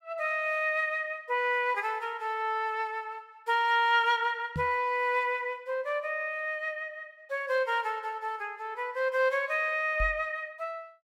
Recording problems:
microphone thump; at 4.5 s and at 10 s; peak -2 dB vs average level

